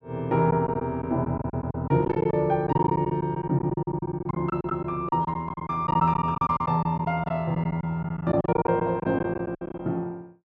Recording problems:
packet loss; 14% of the sound replaced, filled with silence

